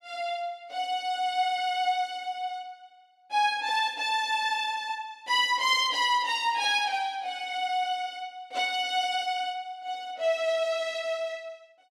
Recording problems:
none

